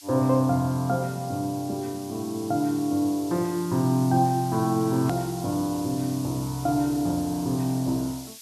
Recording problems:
background hiss; SNR 16 dB
click at an edit; at 5 s

